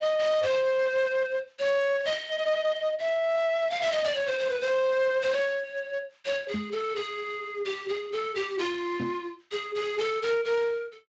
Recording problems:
codec artefacts; Speex, log-spectral distance 3 dB, nothing above 7.3 kHz
distorted audio; hard clipping, uneven, signal-to-distortion ratio 10 dB
knock on the microphone; at 6.5 s and at 9 s; peak 0 dB vs average level

